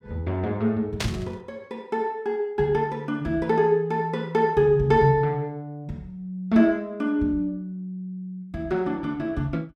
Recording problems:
static burst; at 1 s; peak +1 dB vs average level

